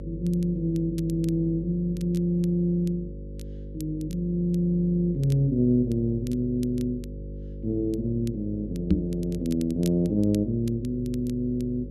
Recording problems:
hum; 50 Hz, harmonics up to 550 Hz, SNR 12 dB
crackle; vinyl, SNR 24 dB
microphone thump; at 9 s; peak +8 dB vs average level

